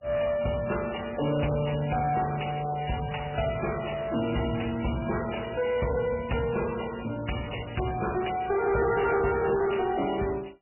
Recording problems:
codec artefacts; MP3, log-spectral distance 8 dB, nothing above 2.9 kHz
distorted audio; soft clipping, signal-to-distortion ratio 10 dB

